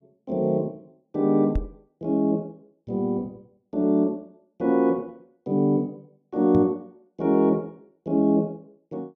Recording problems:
microphone bump; at 1.5 s and at 6.5 s; peak +1 dB vs average level

